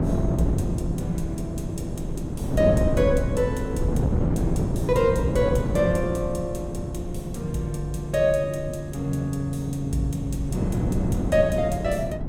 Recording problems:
wind noise; below 260 Hz, SNR 2 dB

